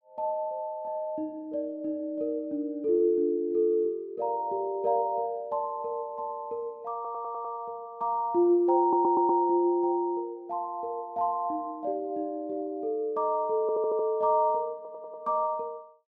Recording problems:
stutter; 4 times, first at 7 s

